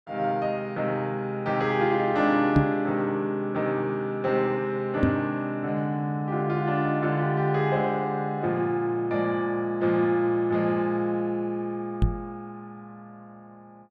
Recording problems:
knock on the microphone; at 2.5 s, at 5 s and at 12 s; peak +8 dB vs average level

